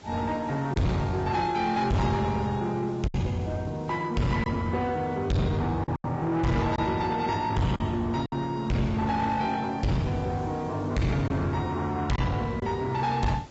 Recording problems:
treble missing; nothing above 7.6 kHz
codec artefacts; AAC, log-spectral distance 2 dB
distorted audio; soft clipping, signal-to-distortion ratio 6 dB
background hiss; slope -4 dB per octave, SNR 25 dB
packet loss; 3% of the sound replaced, filled with silence

